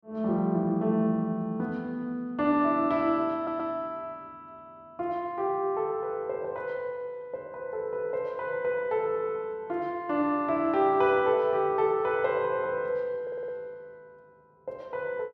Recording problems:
stutter; at 3.5 s and at 13 s

